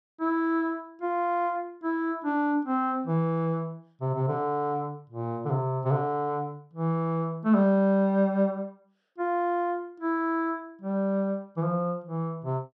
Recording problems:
none

